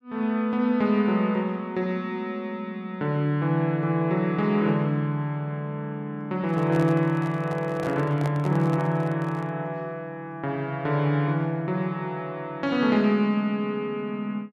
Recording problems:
handling noise; from 6.5 to 9.5 s; peak -5 dB vs average level

